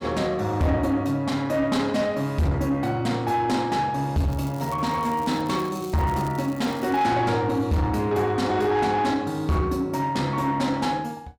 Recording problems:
distortion; soft clipping, signal-to-distortion ratio 11 dB
crackling; from 4.5 to 7 s; loose cable, SNR 22 dB

